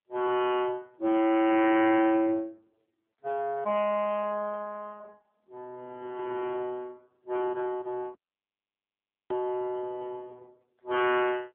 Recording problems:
phone line; 240 Hz to 3.3 kHz, AMR-NB
distorted audio; hard clipping, signal-to-distortion ratio 11 dB
dropout; at 8 s for 1 s

